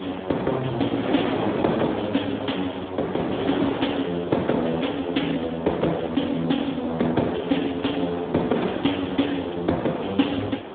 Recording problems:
telephone audio; 150 Hz to 3.6 kHz, Speex
wind noise; below 820 Hz, SNR 7 dB

